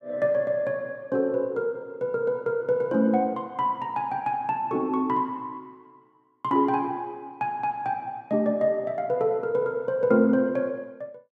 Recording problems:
none

